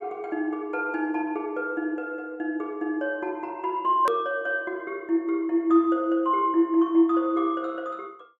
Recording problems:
hard cut with a click; at 4 s

